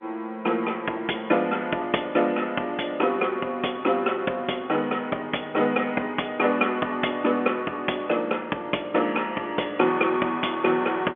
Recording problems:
telephone audio; 220 Hz to 3.4 kHz, G.711

